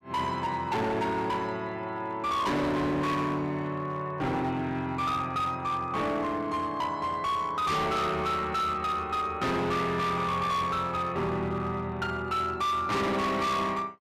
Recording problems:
distorted audio; hard clipping, signal-to-distortion ratio 7 dB

